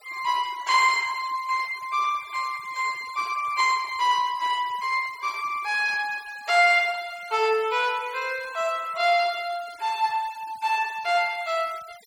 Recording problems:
denoising artefacts; signal-to-artefact ratio 21 dB

